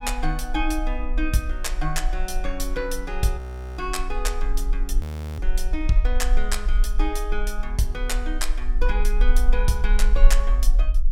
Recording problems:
rumble; below 38 Hz, strongest tone 22 Hz, SNR -2 dB
frozen audio; at 3.5 s and at 5 s

